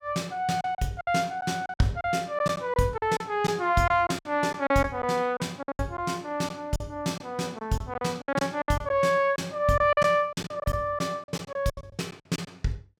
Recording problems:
lost packets; 12% of the sound replaced, filled with silence

